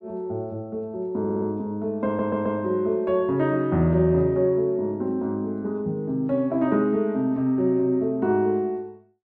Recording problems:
audio stuttering; at 1 s and at 2 s

